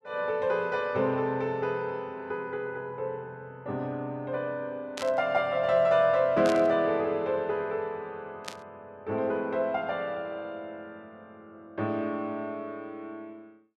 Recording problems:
burst of static; at 5 s, at 6.5 s and at 8.5 s; peak -4 dB vs average level

